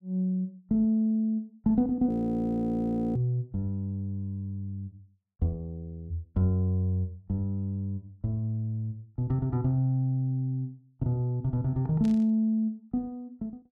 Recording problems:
frozen audio; at 2 s for 1 s
static burst; at 12 s; peak -15 dB vs average level

